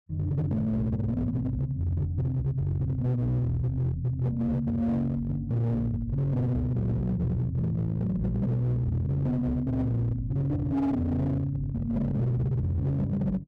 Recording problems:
distortion; hard clipping, signal-to-distortion ratio 11 dB

